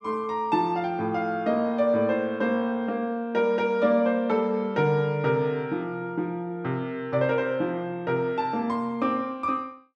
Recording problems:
none

